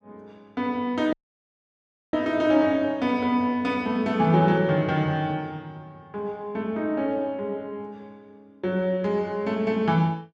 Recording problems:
audio cutting out; at 1 s for 1 s

